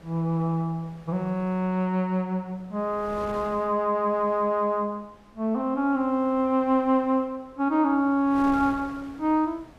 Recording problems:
wind on the microphone; below 1.1 kHz, SNR 23 dB

